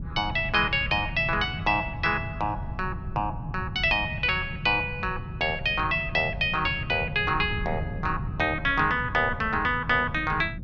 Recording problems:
wind noise; below 160 Hz, SNR 10 dB

